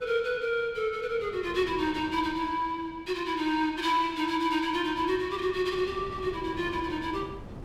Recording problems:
wind on the microphone; below 410 Hz, SNR 18 dB

